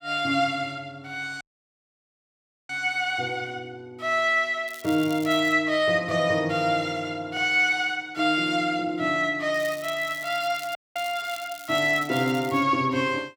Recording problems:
audio cutting out; at 1.5 s for 1.5 s and at 11 s
crackling; at 4.5 s and from 9.5 to 13 s; loose cable, SNR 19 dB

